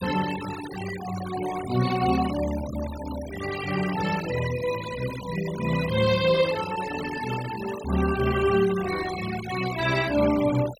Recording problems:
noise reduction artefacts; signal-to-artefact ratio 12 dB

